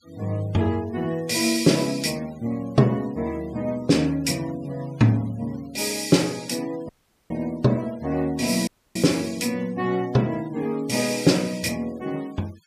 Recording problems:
noise reduction artefacts; signal-to-artefact ratio 24 dB
audio cutting out; at 7 s and at 8.5 s

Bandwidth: 15 kHz